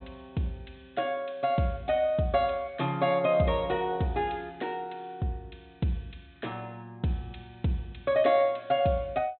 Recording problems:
treble missing; nothing above 4.1 kHz

